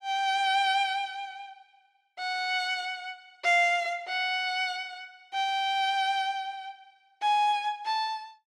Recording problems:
none

